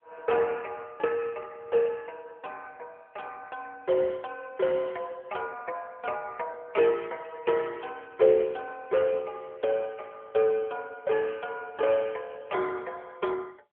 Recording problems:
phone line; 340 Hz to 3.6 kHz, AMR-NB

